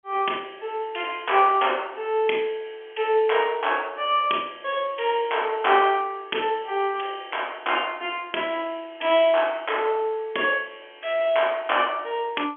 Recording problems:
phone line; 260 Hz to 3.4 kHz, G.711

